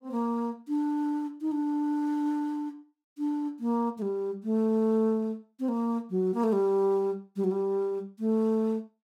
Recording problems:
none

